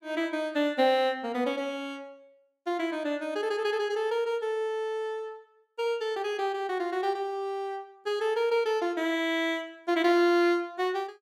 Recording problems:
none

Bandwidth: 16 kHz